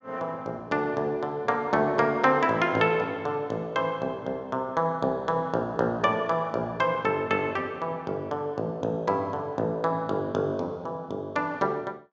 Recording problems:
none

